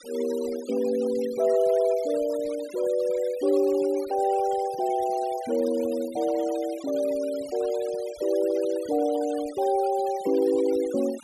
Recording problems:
denoising artefacts; signal-to-artefact ratio 19 dB

